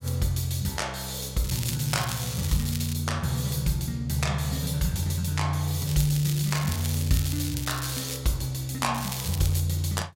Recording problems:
crackling; from 1.5 to 3 s, from 6 to 8 s and at 9 s; loose cable, SNR 9 dB

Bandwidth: 16 kHz